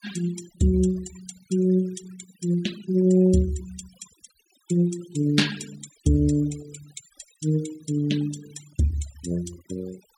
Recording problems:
noise reduction artefacts; signal-to-artefact ratio 18 dB

